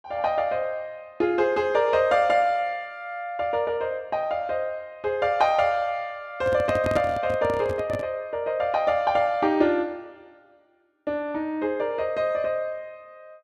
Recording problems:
handling noise; from 6.5 to 8 s; peak -1 dB vs average level

